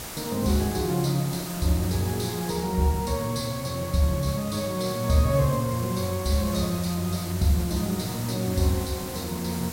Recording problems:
background hiss; slope -3 dB per octave, SNR 10 dB

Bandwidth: 16 kHz